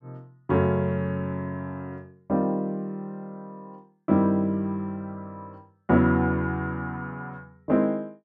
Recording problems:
none

